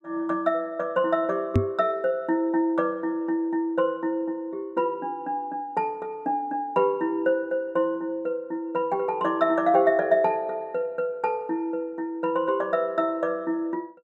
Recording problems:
microphone thump; at 1.5 s; peak +8 dB vs average level

